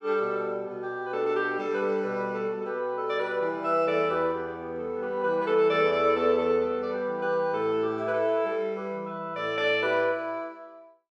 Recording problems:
none

